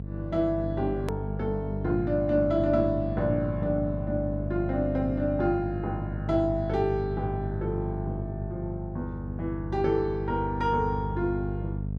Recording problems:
electrical hum; 50 Hz, harmonics up to 500 Hz, SNR 5 dB
edit click; at 1 s

